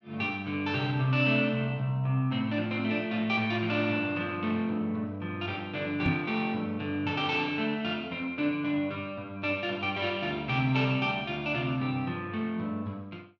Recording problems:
microphone bump; at 6 s; peak +5 dB vs average level

